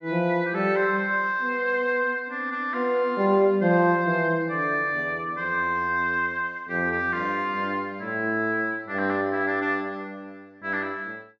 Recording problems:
treble missing; nothing above 8 kHz

